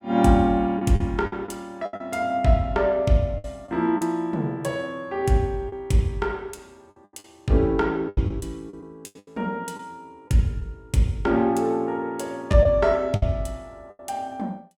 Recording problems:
lost packets; 6% of the sound replaced, filled with the last packet

